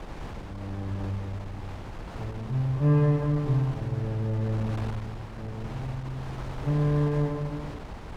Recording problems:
wind noise; below 700 Hz, SNR 12 dB

